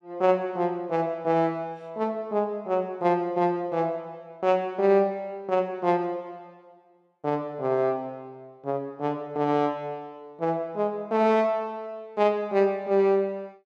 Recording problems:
none

